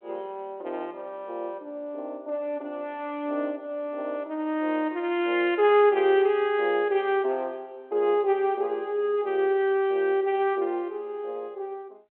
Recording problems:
phone line; 240 Hz to 3.3 kHz, G.726

